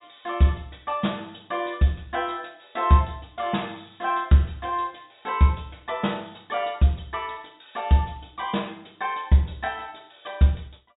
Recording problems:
low-pass filter; nothing above 4 kHz

